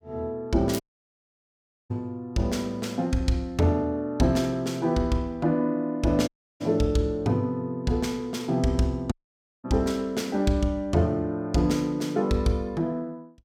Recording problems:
crackling; at 0.5 s; loose cable, SNR 13 dB
dropout; at 1 s for 1 s, at 6.5 s and at 9 s for 0.5 s

